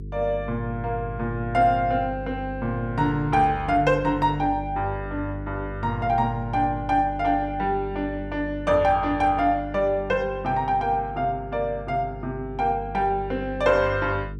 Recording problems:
hum; 50 Hz, harmonics up to 450 Hz, SNR 12 dB

